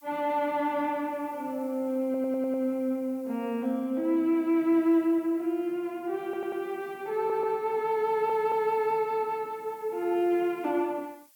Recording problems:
hiss; SNR 29 dB
stutter; 4 times, first at 2 s

